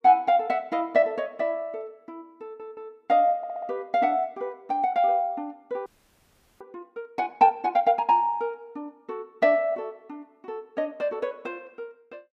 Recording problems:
stutter; at 2.5 s and at 3.5 s
frozen audio; at 6 s for 0.5 s

